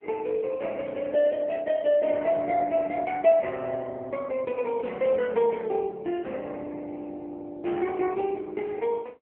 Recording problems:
phone line; 240 Hz to 3.3 kHz, AMR-NB

